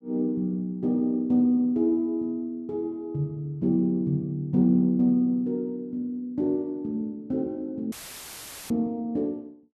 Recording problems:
dropout; at 8 s for 1 s; filled with static

